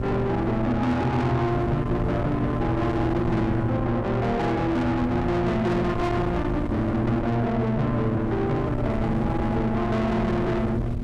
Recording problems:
distorted audio; soft clipping, signal-to-distortion ratio 7 dB
hum; 60 Hz, harmonics up to 720 Hz, SNR 7 dB
wind noise; below 420 Hz, SNR 5 dB

